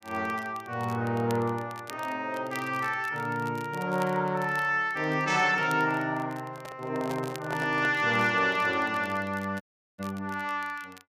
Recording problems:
crackle; vinyl, SNR 22 dB
microphone handling noise; from 6.5 to 8 s; peak -4 dB vs average level
audio cutting out; at 9.5 s

